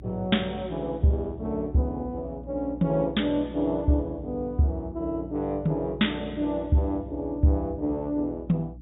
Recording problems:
treble cut off; nothing above 4 kHz
hum; 60 Hz, harmonics up to 300 Hz, SNR 16 dB

